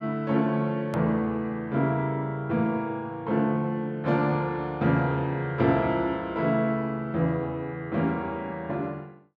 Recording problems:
hard cut with a click; at 1 s

